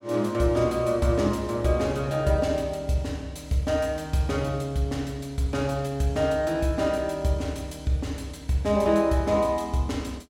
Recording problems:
none

